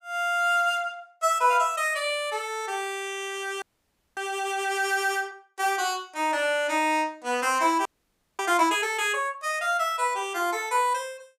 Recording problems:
frozen audio; at 3.5 s for 0.5 s and at 8 s for 0.5 s

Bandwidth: 15.5 kHz